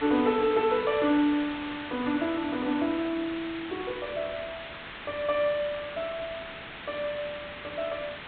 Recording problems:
treble cut off; nothing above 4 kHz
hiss; SNR 10 dB

